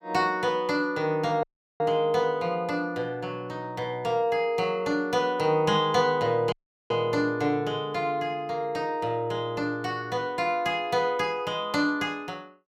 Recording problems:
audio cutting out; at 1.5 s and at 6.5 s

